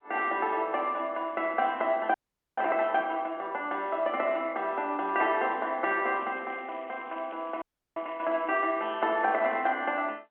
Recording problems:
telephone audio; 190 Hz to 3.3 kHz, G.711
audio freezing; at 2 s and at 7.5 s
crackle; from 6 to 9.5 s; loose cable, SNR 27 dB

